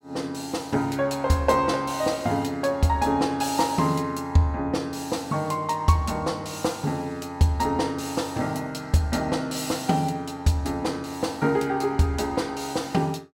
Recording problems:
none

